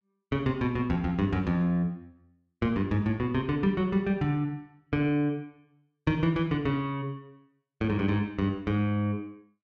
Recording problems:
none

